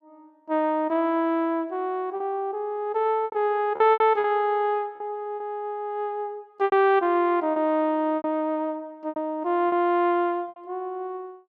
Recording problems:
packet loss; 7% of the sound replaced, filled with repeated pitch periods

